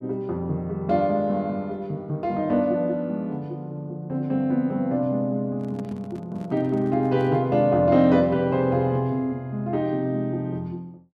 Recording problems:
microphone handling noise; from 5.5 to 7.5 s; peak -9 dB vs average level

